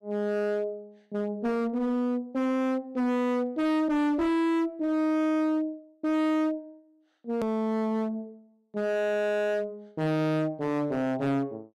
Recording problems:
distortion; hard clipping, uneven, signal-to-distortion ratio 6 dB
edit click; at 7.5 s

